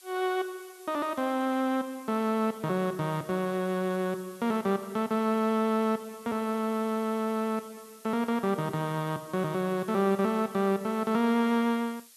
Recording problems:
hiss; slope +3 dB per octave, SNR 23 dB

